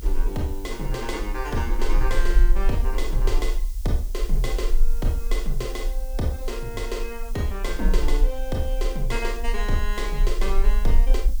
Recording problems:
background hiss; SNR 16 dB
rumble; below 36 Hz, strongest tone 20 Hz, SNR -2 dB

